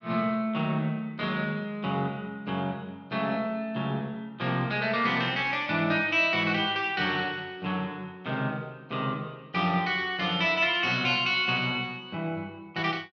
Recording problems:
none

